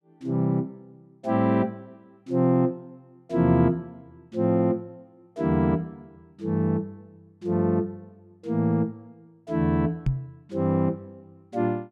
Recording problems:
knock on the microphone; at 10 s; peak +4 dB vs average level

